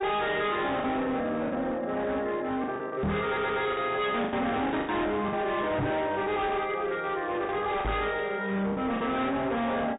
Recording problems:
treble missing; nothing above 3.8 kHz
lossy compression; MP3, log-spectral distance 2 dB
distorted audio; hard clipping, signal-to-distortion ratio 7 dB
packet loss; 7% of the sound replaced, filled with the last packet
microphone bump; at 3 s, at 6 s and at 8 s; peak +3 dB vs average level
stutter; at 3.5 s

